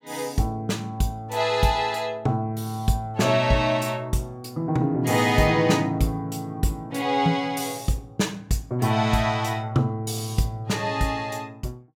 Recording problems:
none

